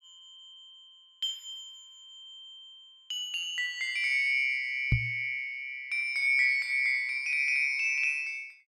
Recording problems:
microphone thump; at 5 s; peak +5 dB vs average level

